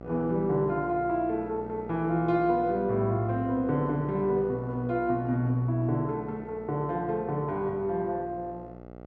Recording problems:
hum; 60 Hz, harmonics up to 1.5 kHz, SNR 15 dB

